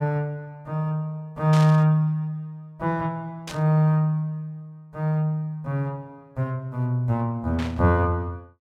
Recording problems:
burst of static; at 1.5 s, at 3.5 s and at 7.5 s; peak -6 dB vs average level

